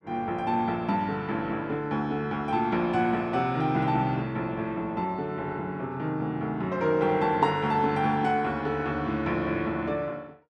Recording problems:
none

